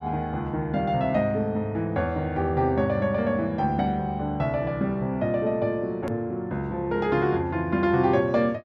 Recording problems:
edit click; at 6 s

